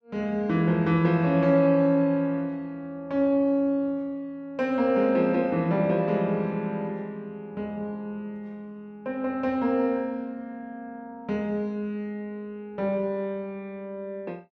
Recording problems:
none

